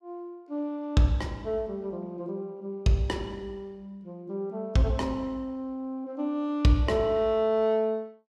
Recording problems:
none

